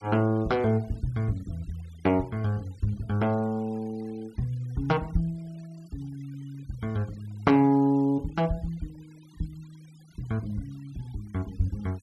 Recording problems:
noise reduction artefacts; signal-to-artefact ratio 28 dB

